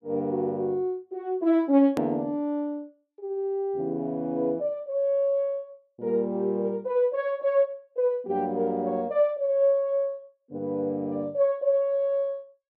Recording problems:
click at an edit; at 2 s

